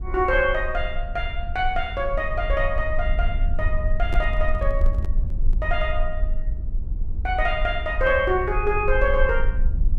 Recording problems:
low-frequency rumble; below 50 Hz, SNR 3 dB
microphone handling noise; from 4 to 5.5 s; peak -5 dB vs average level

